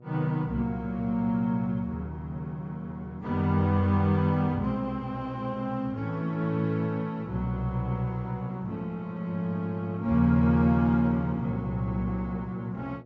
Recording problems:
low-pass filter; nothing above 8 kHz
hum; 60 Hz, harmonics up to 720 Hz, SNR 23 dB

